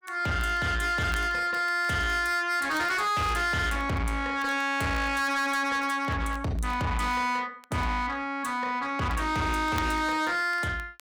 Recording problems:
distortion; soft clipping, signal-to-distortion ratio 8 dB
crackle; vinyl, SNR 25 dB

